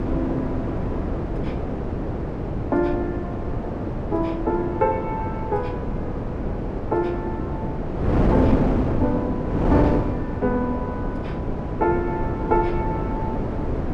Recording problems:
wind noise; below 420 Hz, SNR 0 dB

